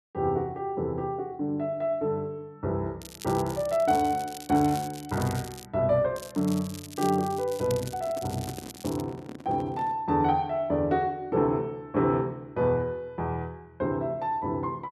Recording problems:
crackle; from 3 to 5.5 s and from 6 to 9 s; loose cable, SNR 15 dB
microphone handling noise; from 7.5 to 10 s; peak -8 dB vs average level

